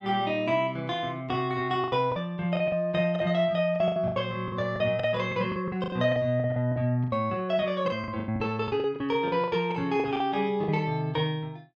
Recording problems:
packet loss; 14% of the sound replaced, filled with the last packet

